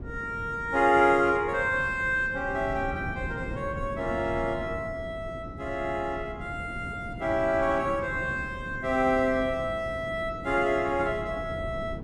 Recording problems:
wind on the microphone; below 280 Hz, SNR 12 dB

